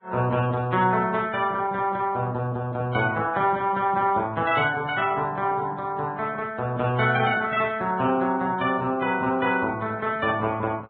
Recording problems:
low-pass filter; nothing above 4 kHz
lossy compression; Vorbis, log-spectral distance 3 dB

